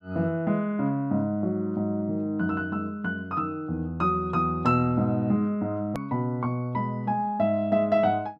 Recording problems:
edit click; at 6 s

